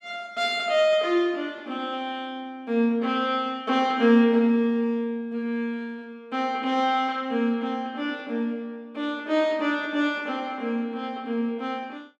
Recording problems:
none

